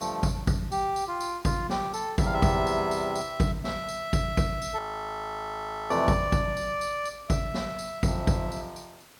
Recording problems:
hiss; slope -2 dB per octave, SNR 24 dB
audio freezing; at 5 s for 1 s

